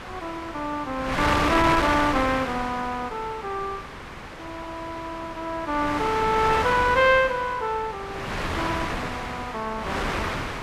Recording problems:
wind noise; below 2.1 kHz, SNR 4 dB

